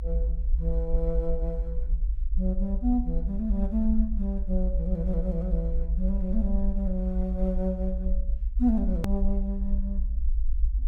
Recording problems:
low-frequency rumble; below 56 Hz, SNR 0 dB
edit click; at 9 s

